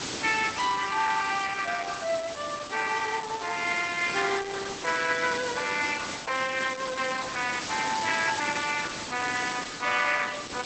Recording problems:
lossy compression; Opus, log-spectral distance 11 dB, nothing above 7.8 kHz
background hiss; SNR 9 dB

